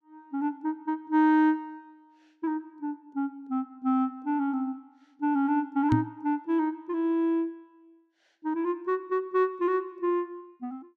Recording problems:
knock on the microphone; at 6 s; peak +7 dB vs average level

